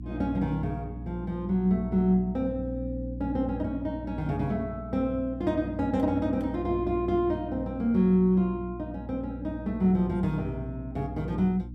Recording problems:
hum; 60 Hz, harmonics up to 300 Hz, SNR 11 dB

